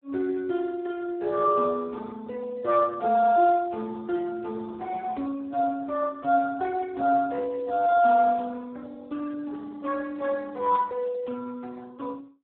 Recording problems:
phone line; 240 Hz to 2 kHz, Speex

